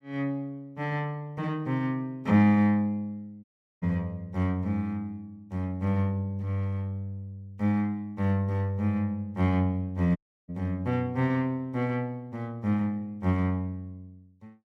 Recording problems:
dropout; at 3.5 s and at 10 s

